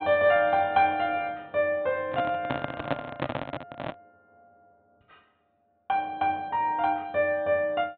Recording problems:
low-pass filter; nothing above 4 kHz
microphone handling noise; from 2 to 4 s; peak +2 dB vs average level

